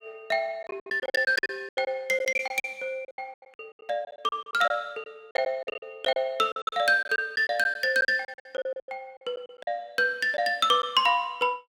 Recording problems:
packet loss; 16% of the sound replaced, filled with silence

